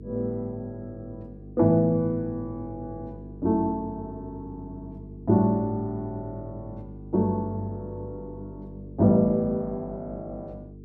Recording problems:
mains hum; 50 Hz, harmonics up to 450 Hz, SNR 16 dB

